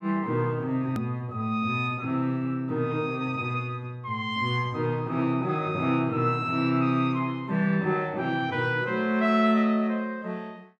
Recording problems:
edit click; at 1 s

